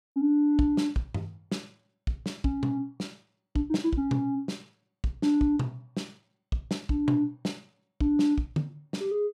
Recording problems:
none

